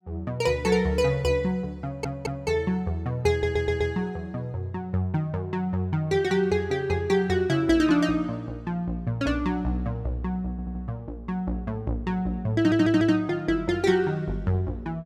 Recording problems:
stutter; 4 times, first at 2 s

